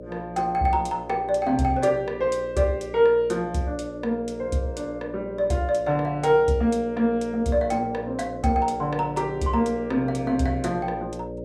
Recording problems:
hum; 60 Hz, harmonics up to 600 Hz, SNR 13 dB

